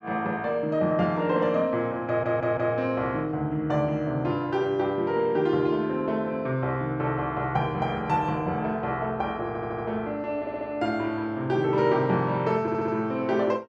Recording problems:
stutter; 4 times, first at 2 s

